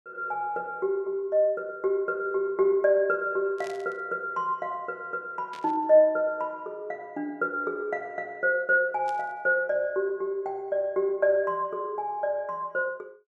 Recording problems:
static burst; at 3.5 s, at 5.5 s and at 9 s; peak -13 dB vs average level

